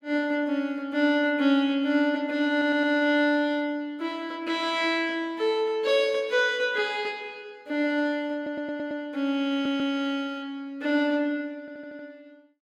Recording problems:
stutter; 4 times, first at 2.5 s

